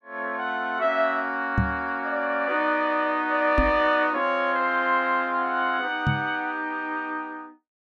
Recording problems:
knock on the microphone; at 1.5 s, at 3.5 s and at 6 s; peak +4 dB vs average level

